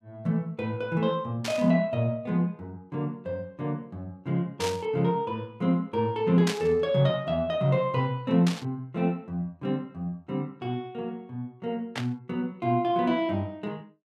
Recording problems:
static burst; 5 times, first at 1.5 s; peak +1 dB vs average level

